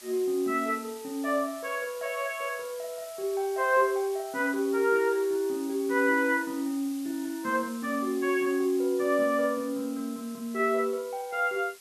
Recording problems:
hiss; slope +2 dB per octave, SNR 18 dB

